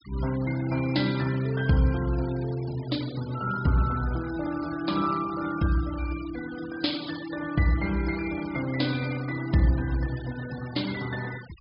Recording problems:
treble cut off; nothing above 5.5 kHz
noise reduction artefacts; signal-to-artefact ratio 16 dB

